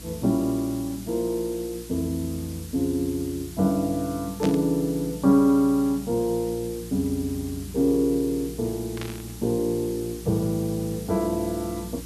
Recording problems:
hum; 60 Hz, harmonics up to 360 Hz, SNR 17 dB
hiss; slope +2 dB per octave, SNR 17 dB
burst of static; at 4.5 s and at 9 s; peak -5 dB vs average level

